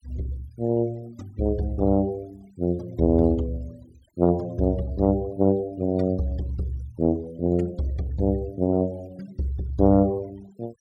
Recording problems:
noise reduction artefacts; signal-to-artefact ratio 27 dB

